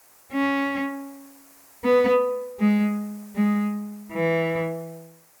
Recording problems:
background hiss; SNR 26 dB

